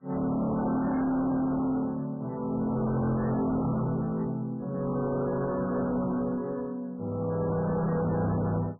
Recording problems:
lossy codec; MP3, log-spectral distance 2 dB, nothing above 11.3 kHz
distortion; soft clipping, signal-to-distortion ratio 6 dB

